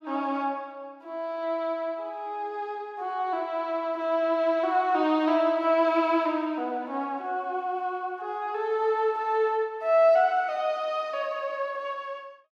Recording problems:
none

